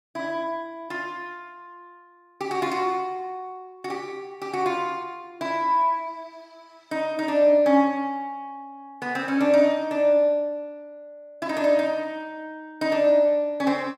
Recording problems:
none

